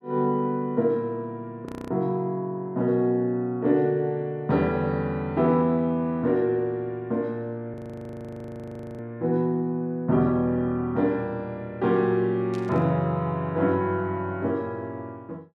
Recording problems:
audio freezing; at 1.5 s and at 7.5 s for 1.5 s
burst of static; at 13 s; peak -15 dB vs average level

